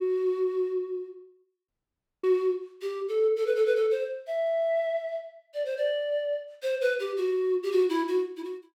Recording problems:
audio cutting out; at 1.5 s for 0.5 s

